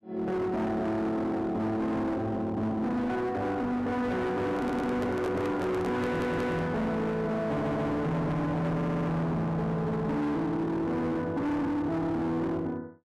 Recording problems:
distortion; hard clipping, signal-to-distortion ratio 7 dB
microphone handling noise; from 4.5 to 6.5 s; peak +2 dB vs average level
stutter; 4 times, first at 4.5 s

